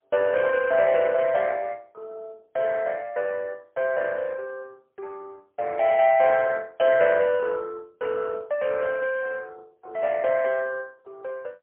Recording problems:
phone line; 370 Hz to 2.3 kHz, AMR-NB, then MP3

